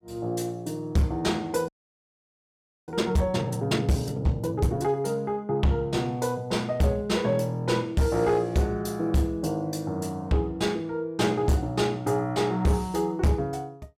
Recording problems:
distorted audio; hard clipping, signal-to-distortion ratio 11 dB
audio freezing; at 1.5 s for 1 s

